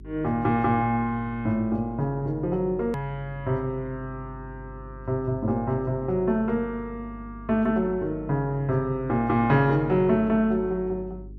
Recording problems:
hum; 50 Hz, harmonics up to 400 Hz, SNR 17 dB
edit click; at 3 s

